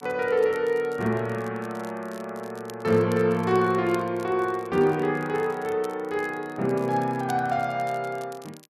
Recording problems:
crackling; vinyl, SNR 25 dB

